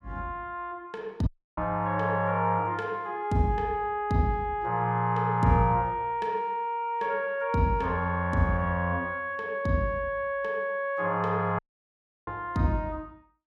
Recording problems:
dropout; at 1.5 s and at 12 s for 0.5 s

